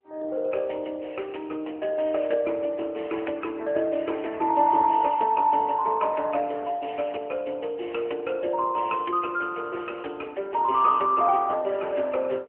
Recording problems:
telephone audio; 280 Hz to 3.1 kHz, AMR-NB

